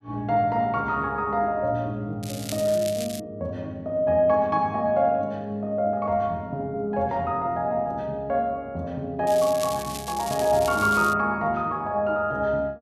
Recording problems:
crackling; at 2 s and from 9.5 to 11 s; loose cable, SNR 12 dB

